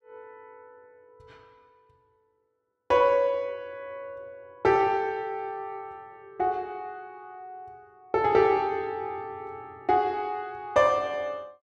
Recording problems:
none

